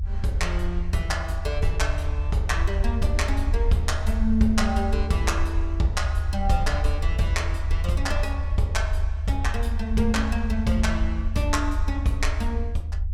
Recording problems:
rumble; below 76 Hz, SNR 0 dB

